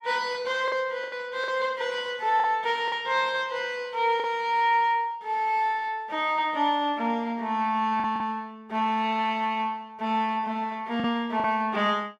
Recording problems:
lost packets; 4% of the sound replaced, filled with the last packet

